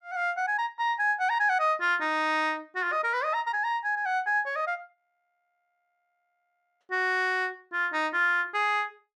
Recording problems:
audio freezing; at 5 s for 2 s

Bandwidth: 12.5 kHz